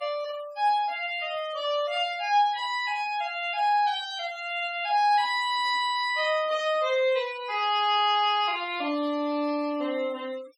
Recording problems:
denoising artefacts; signal-to-artefact ratio 21 dB

